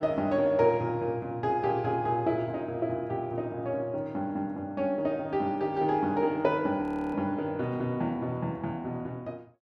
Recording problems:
audio freezing; at 7 s

